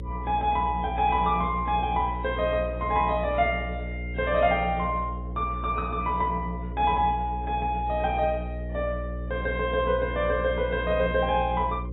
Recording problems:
codec artefacts; AAC, log-spectral distance 2 dB, nothing above 3.2 kHz
hum; 60 Hz, harmonics up to 540 Hz, SNR 8 dB

